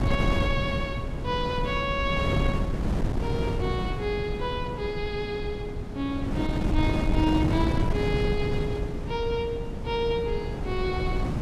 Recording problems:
wind on the microphone; below 250 Hz, SNR 0 dB

